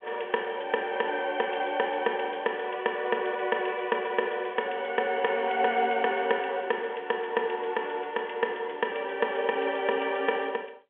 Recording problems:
phone line; 220 Hz to 3.4 kHz, G.711

